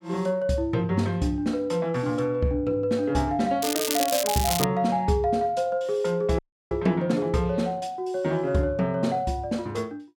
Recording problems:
crackle; from 3.5 to 4.5 s; loose cable, SNR 2 dB
audio cutting out; at 6.5 s

